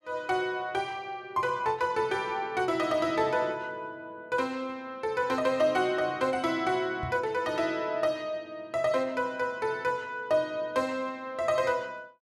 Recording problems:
microphone bump; at 7 s; peak -4 dB vs average level

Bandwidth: 14.5 kHz